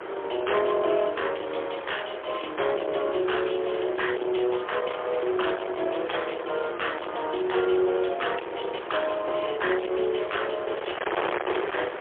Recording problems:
telephone audio; 320 Hz to 3.4 kHz, AMR-NB, then MP3
distortion; soft clipping, signal-to-distortion ratio 6 dB
wind on the microphone; below 1.6 kHz, SNR 7 dB

